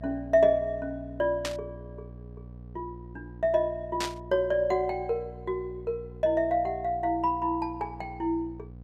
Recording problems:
hum; 60 Hz, harmonics up to 720 Hz, SNR 16 dB
static burst; at 1.5 s and at 4 s; peak 0 dB vs average level

